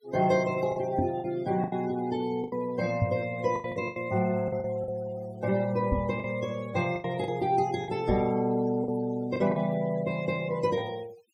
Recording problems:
denoising artefacts; signal-to-artefact ratio 20 dB
lost packets; 8% of the sound replaced, filled with the last packet
microphone bump; 4 times, first at 1 s; peak +5 dB vs average level

